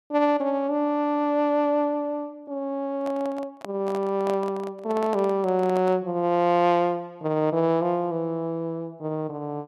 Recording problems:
handling noise; from 3 to 6 s; peak -5 dB vs average level

